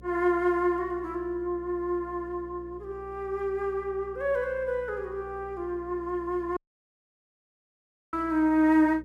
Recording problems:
hum; 60 Hz, harmonics up to 540 Hz, SNR 21 dB
audio cutting out; at 6.5 s for 1.5 s

